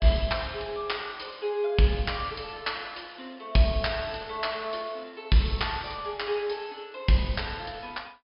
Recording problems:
treble cut off; nothing above 5.5 kHz

